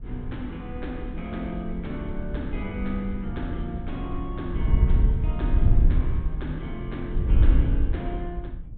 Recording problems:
treble missing; nothing above 4 kHz
wind on the microphone; below 70 Hz, SNR -6 dB

